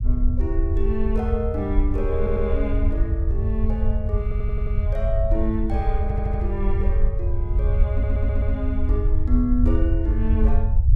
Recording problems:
low-frequency rumble; below 74 Hz, SNR -4 dB
stutter; 4 times, first at 2 s

